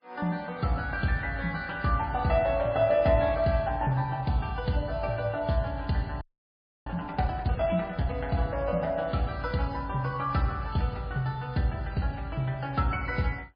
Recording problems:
codec artefacts; MP3, log-spectral distance 3 dB, nothing above 4.2 kHz
frozen audio; at 6 s for 0.5 s

